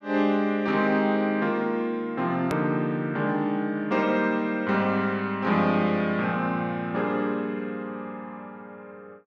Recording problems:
hard cut with a click; at 2.5 s

